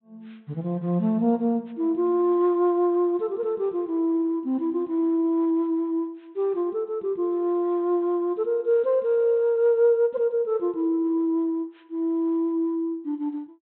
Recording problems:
treble cut off; nothing above 3.9 kHz

